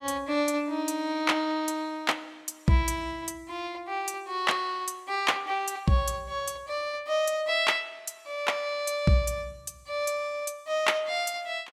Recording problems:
none

